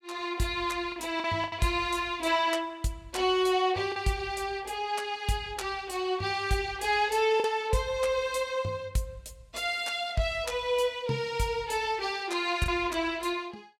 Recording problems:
lost packets; 2% of the sound replaced, filled with the last packet

